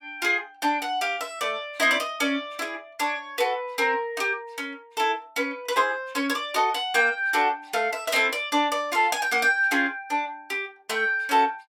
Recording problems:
none

